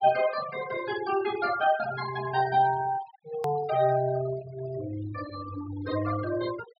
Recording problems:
treble cut off; nothing above 5.5 kHz
denoising artefacts; signal-to-artefact ratio 13 dB
edit click; at 3.5 s

